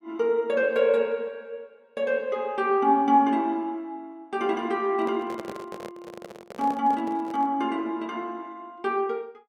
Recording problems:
microphone handling noise; from 5 to 7.5 s; peak -8 dB vs average level

